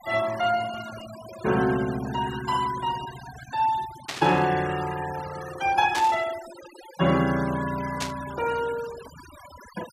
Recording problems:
noise reduction artefacts; signal-to-artefact ratio 15 dB
burst of static; at 4 s, at 6 s and at 8 s; peak 0 dB vs average level

